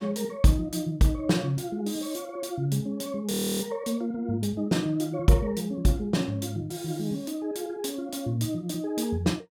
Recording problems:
frozen audio; at 3.5 s

